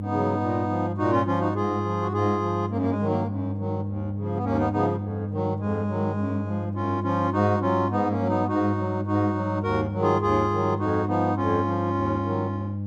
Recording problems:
mains hum; 50 Hz, harmonics up to 600 Hz, SNR 5 dB

